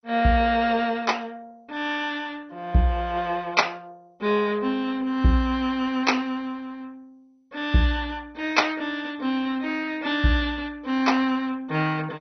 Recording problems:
codec artefacts; MP2, log-spectral distance 3 dB, nothing above 6 kHz

